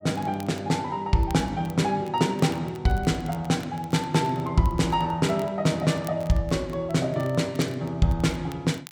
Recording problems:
crackle; vinyl, SNR 24 dB

